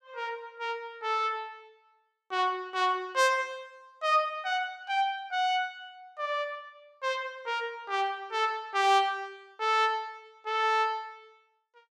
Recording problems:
none

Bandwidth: 15.5 kHz